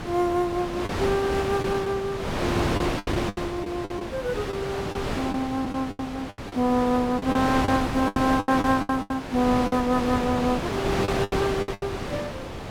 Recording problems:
wind on the microphone; below 1.3 kHz, SNR 4 dB
lost packets; 11% of the sound replaced, filled with the last packet

